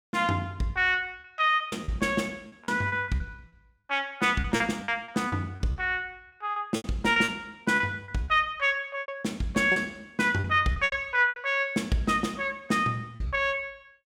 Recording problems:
packet loss; 11% of the sound replaced, filled with repeated pitch periods

